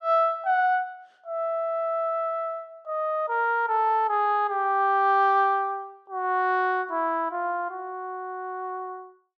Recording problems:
none

